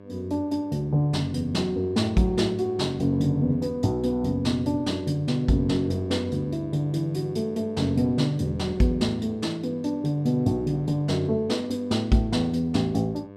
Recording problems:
hum; 50 Hz, harmonics up to 1.7 kHz, SNR 17 dB

